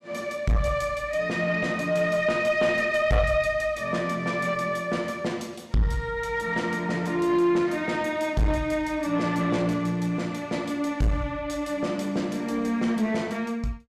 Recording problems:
distorted audio; soft clipping, signal-to-distortion ratio 9 dB

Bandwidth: 14.5 kHz